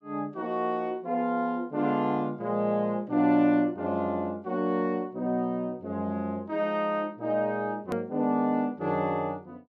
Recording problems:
hard cut with a click; at 8 s

